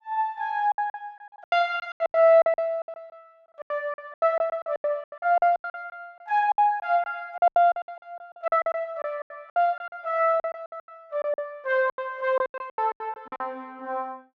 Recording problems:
packet loss; 21% of the sound replaced, filled with silence

